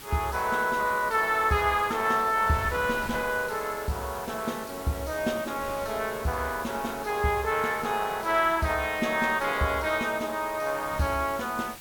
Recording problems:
background hiss; slope -1 dB per octave, SNR 16 dB
wind on the microphone; below 1.4 kHz, SNR 20 dB

